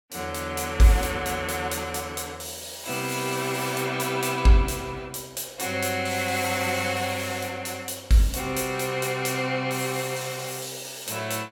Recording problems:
none

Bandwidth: 17 kHz